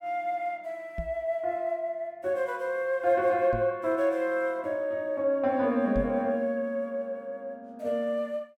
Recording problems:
microphone thump; at 1 s, at 3.5 s and at 6 s; peak -2 dB vs average level

